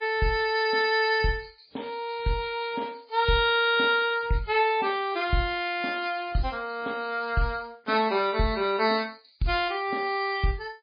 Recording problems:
lossy codec; MP3, log-spectral distance 6 dB

